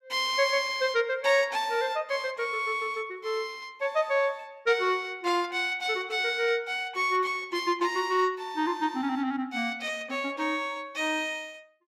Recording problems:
none

